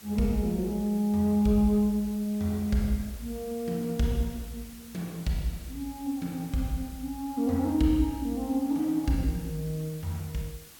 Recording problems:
background hiss; slope 0 dB per octave, SNR 19 dB

